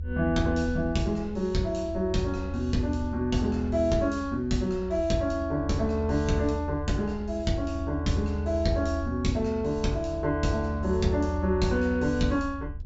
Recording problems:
treble missing; nothing above 8 kHz
low-frequency rumble; below 80 Hz, strongest tone 78 Hz, SNR 7 dB

